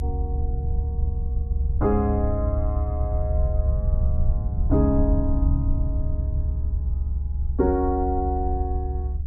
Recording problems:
rumble; below 72 Hz, SNR -1 dB

